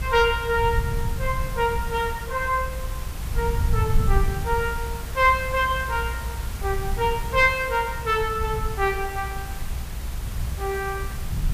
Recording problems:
background hiss; slope -3 dB per octave, SNR 14 dB
low-frequency rumble; below 94 Hz, SNR 6 dB

